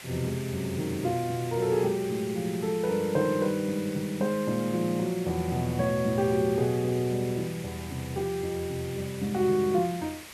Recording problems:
background hiss; SNR 14 dB

